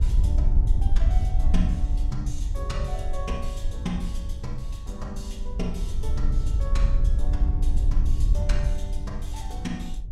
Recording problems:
wind noise; below 58 Hz, SNR -8 dB

